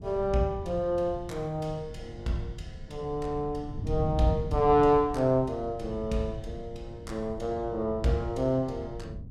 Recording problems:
wind noise; below 130 Hz, SNR 11 dB

